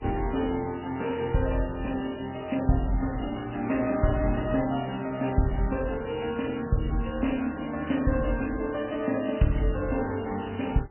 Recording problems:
lossy compression; MP3, log-spectral distance 8 dB, nothing above 3 kHz

